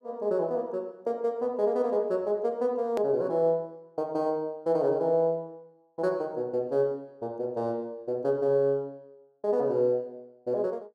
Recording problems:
edit click; at 3 s

